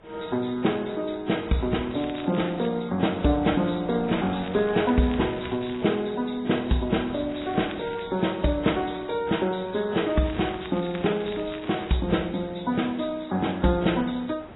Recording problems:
lossy compression; Vorbis, then AAC, log-spectral distance 8 dB, nothing above 3.9 kHz
wind on the microphone; below 920 Hz, SNR 23 dB
crackling; 4 times, first at 2 s; loose cable, SNR 19 dB

